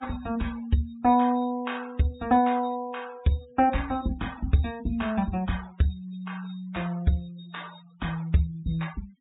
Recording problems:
treble missing; nothing above 4 kHz
denoising artefacts; signal-to-artefact ratio 22 dB

